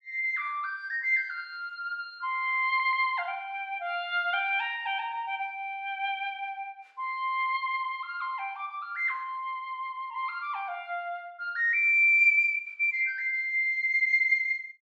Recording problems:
stutter; at 2.5 s

